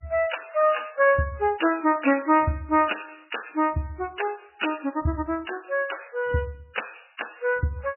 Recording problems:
lossy compression; MP3, log-spectral distance 7 dB, nothing above 2.9 kHz

